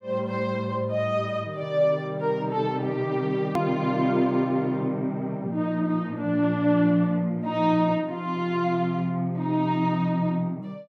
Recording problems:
edit click; at 3.5 s

